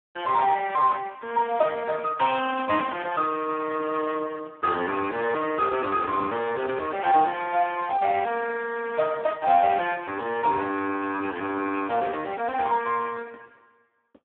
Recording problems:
telephone audio; 240 Hz to 3.1 kHz, Speex

